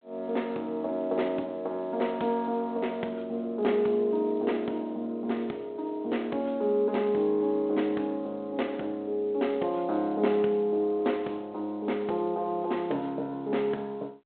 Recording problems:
phone line; 260 Hz to 3.5 kHz, G.726

